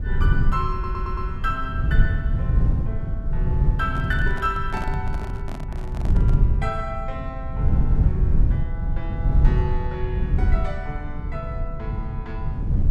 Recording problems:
rumble; below 100 Hz, SNR -7 dB
stutter; at 0.5 s
microphone handling noise; from 4 to 6.5 s; peak -1 dB vs average level

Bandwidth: 13 kHz